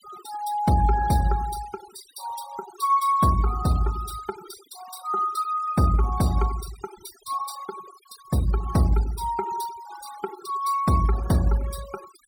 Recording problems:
denoising artefacts; signal-to-artefact ratio 16 dB

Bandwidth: 16.5 kHz